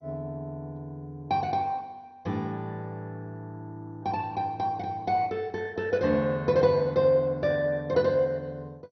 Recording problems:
lossy compression; MP2, log-spectral distance 2 dB, nothing above 5.8 kHz

